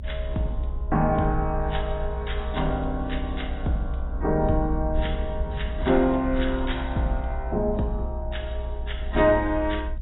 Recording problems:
lossy compression; AAC, log-spectral distance 2 dB, nothing above 3.8 kHz
rumble; below 62 Hz, SNR 6 dB

